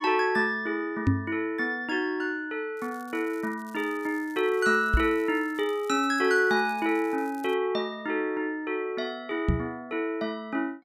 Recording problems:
microphone thump; at 1 s, at 5 s and at 9.5 s; peak +8 dB vs average level
crackling; from 3 to 7.5 s; loose cable, SNR 26 dB

